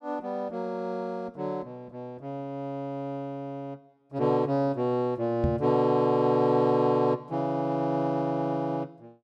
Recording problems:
knock on the microphone; at 5.5 s; peak +4 dB vs average level

